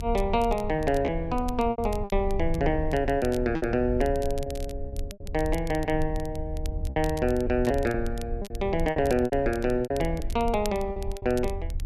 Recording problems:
rumble; below 78 Hz, SNR 8 dB
crackle; vinyl, SNR 20 dB
lost packets; 9% of the sound replaced, filled with repeated pitch periods

